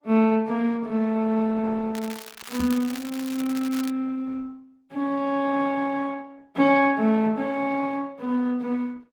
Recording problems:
lossy compression; Opus, log-spectral distance 3 dB
crackle; from 2 to 4 s; loose cable, SNR 14 dB
knock on the microphone; at 2.5 s; peak -2 dB vs average level

